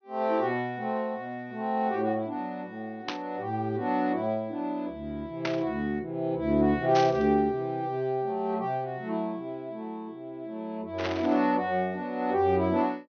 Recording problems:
treble cut off; nothing above 6.3 kHz
static burst; 4 times, first at 3 s; peak +1 dB vs average level

